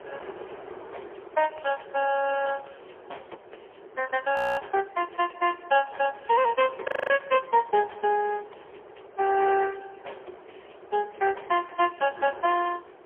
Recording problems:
phone line; 320 Hz to 3.1 kHz, AMR-NB, then MP3
wind noise; below 830 Hz, SNR 20 dB
frozen audio; at 4.5 s and at 7 s

